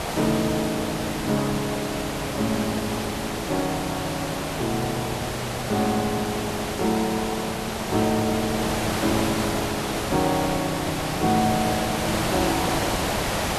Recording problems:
hiss; SNR 1 dB

